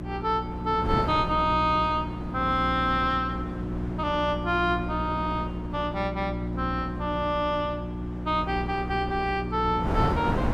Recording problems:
electrical hum; 60 Hz, harmonics up to 360 Hz, SNR 6 dB
wind on the microphone; below 580 Hz, SNR 9 dB

